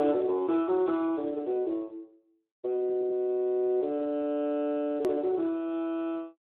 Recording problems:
telephone audio; 300 Hz to 3.6 kHz, Speex
click at an edit; at 5 s

